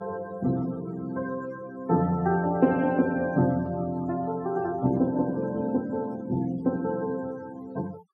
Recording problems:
denoising artefacts; signal-to-artefact ratio 22 dB

